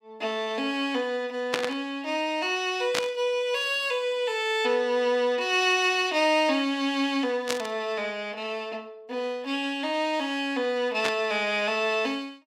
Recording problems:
burst of static; 4 times, first at 1.5 s; peak +4 dB vs average level

